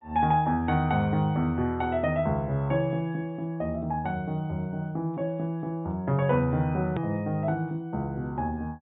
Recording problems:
treble missing; nothing above 4 kHz
edit click; at 7 s

